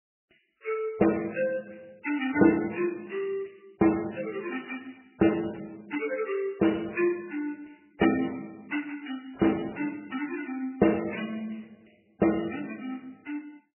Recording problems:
lossy compression; MP3, log-spectral distance 12 dB, nothing above 2.9 kHz

